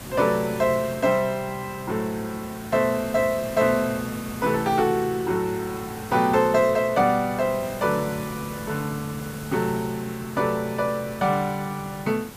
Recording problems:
hiss; slope -4 dB per octave, SNR 14 dB

